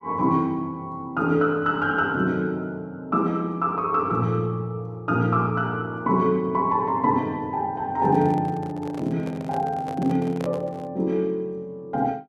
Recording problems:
handling noise; from 8 to 11 s; peak -5 dB vs average level

